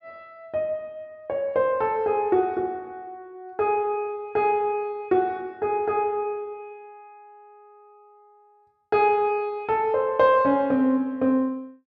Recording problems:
none

